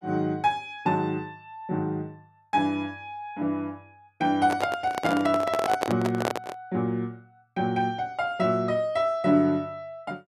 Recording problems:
microphone handling noise; from 4.5 to 6.5 s; peak +4 dB vs average level

